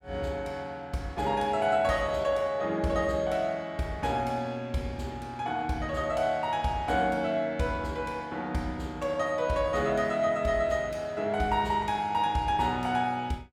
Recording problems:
none

